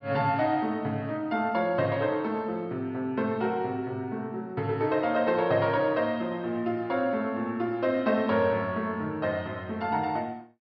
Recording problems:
treble missing; nothing above 5.6 kHz

